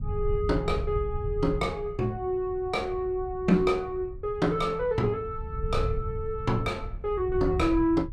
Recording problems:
low-frequency rumble; below 94 Hz, SNR 8 dB

